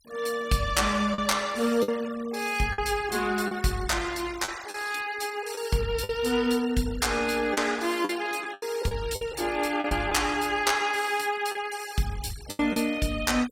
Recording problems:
denoising artefacts; signal-to-artefact ratio 17 dB
lost packets; 6% of the sound replaced, filled with the last packet

